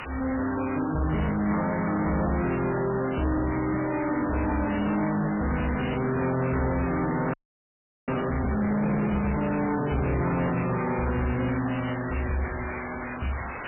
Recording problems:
codec artefacts; MP3, log-spectral distance 15 dB
distorted audio; soft clipping, signal-to-distortion ratio 10 dB
hiss; SNR 9 dB
frozen audio; at 7.5 s for 0.5 s

